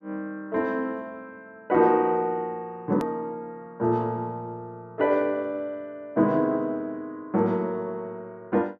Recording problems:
click at an edit; at 3 s

